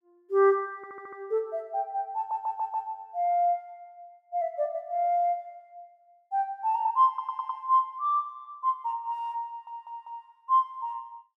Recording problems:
audio stuttering; 4 times, first at 1 s

